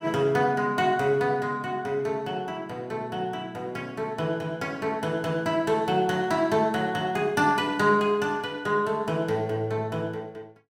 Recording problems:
none

